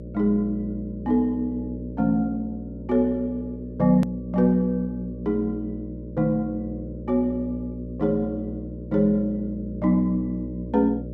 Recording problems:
hum; 60 Hz, harmonics up to 600 Hz, SNR 11 dB
hard cut with a click; at 4 s

